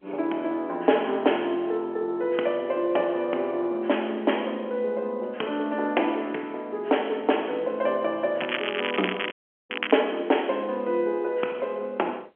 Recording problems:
telephone audio; 240 Hz to 3.3 kHz, G.711
crackle; from 8.5 to 10 s; loose cable, SNR 5 dB
audio cutting out; at 9.5 s

